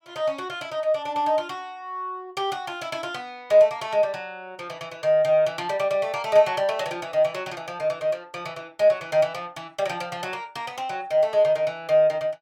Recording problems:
none

